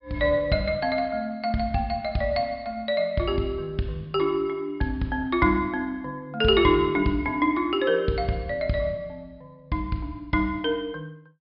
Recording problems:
treble cut off; nothing above 5.5 kHz

